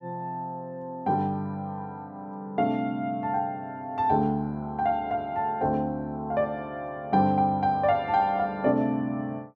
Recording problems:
none

